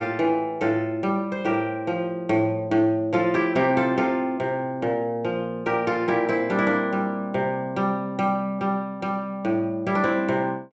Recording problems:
low-pass filter; nothing above 8 kHz

